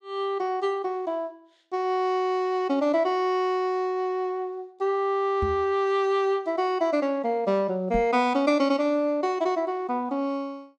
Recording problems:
knock on the microphone; at 5.5 s and at 8 s; peak -2 dB vs average level

